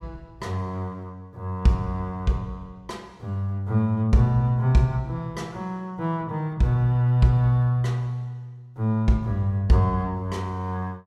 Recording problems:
none

